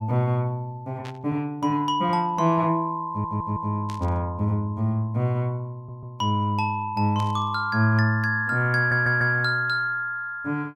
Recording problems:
static burst; at 1 s, at 4 s and at 7 s; peak -13 dB vs average level
audio stuttering; at 3 s, at 6 s and at 9 s

